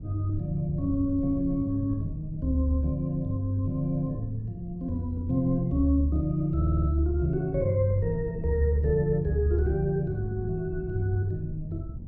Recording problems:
low-frequency rumble; below 140 Hz, SNR 11 dB
audio stuttering; at 6.5 s

